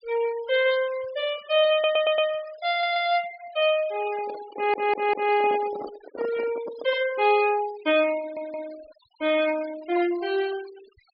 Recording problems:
treble cut off; nothing above 5.5 kHz
noise reduction artefacts; signal-to-artefact ratio 18 dB
stutter; 4 times, first at 1.5 s
handling noise; from 4 to 7 s; peak -7 dB vs average level

